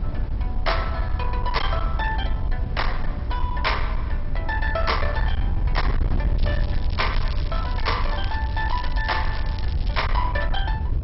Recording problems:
lossy codec; MP2, log-spectral distance 2 dB, nothing above 5.5 kHz
distorted audio; hard clipping, uneven, signal-to-distortion ratio 11 dB
rumble; below 72 Hz, SNR 0 dB
wind noise; below 150 Hz, SNR 6 dB
crackling; from 6.5 to 10 s; loose cable, SNR 13 dB

